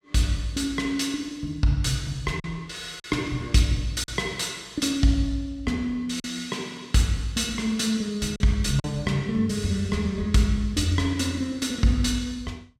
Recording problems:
lost packets; 1.9% of the sound replaced, filled with silence

